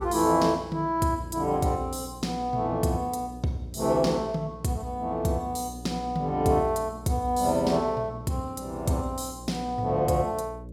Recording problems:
hum; 60 Hz, harmonics up to 600 Hz, SNR 16 dB

